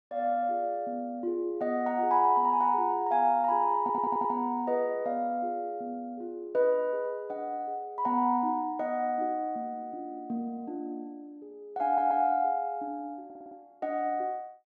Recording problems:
audio stuttering; at 4 s, at 12 s and at 13 s

